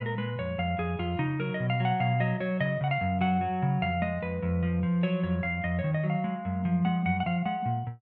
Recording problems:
treble cut off; nothing above 6.1 kHz

